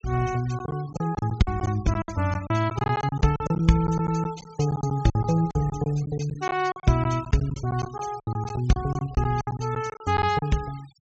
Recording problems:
low-pass filter; nothing above 8 kHz
noise reduction artefacts; signal-to-artefact ratio 20 dB
lost packets; 14% of the sound replaced, filled with silence

